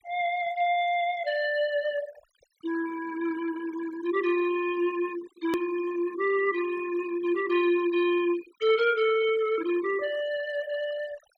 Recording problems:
noise reduction artefacts; signal-to-artefact ratio 17 dB
edit click; at 5.5 s

